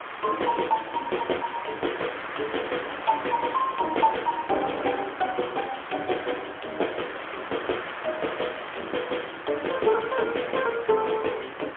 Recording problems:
telephone audio; 280 Hz to 3.4 kHz, AMR-NB, then MP3
hiss; SNR 9 dB

